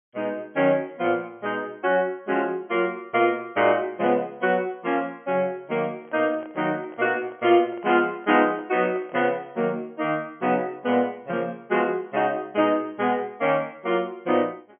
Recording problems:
treble missing; nothing above 3.2 kHz
handling noise; from 6 to 9.5 s; peak -12 dB vs average level

